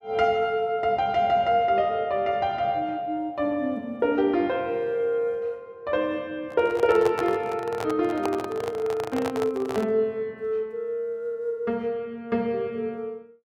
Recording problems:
microphone handling noise; from 6.5 to 10 s; peak 0 dB vs average level

